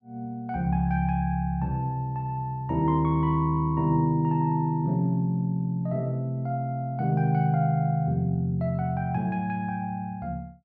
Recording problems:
none

